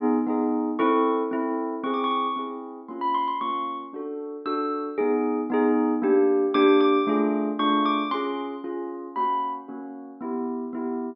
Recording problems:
low-pass filter; nothing above 5.3 kHz

